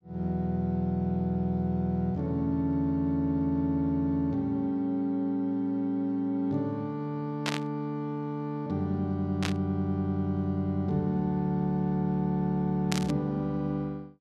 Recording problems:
static burst; at 7.5 s, at 9.5 s and at 13 s; peak +2 dB vs average level

